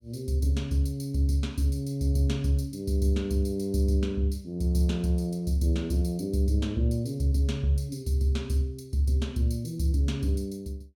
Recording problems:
none

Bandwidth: 17 kHz